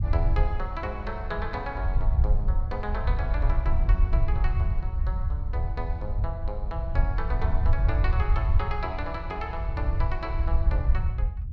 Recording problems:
rumble; below 72 Hz, SNR -7 dB

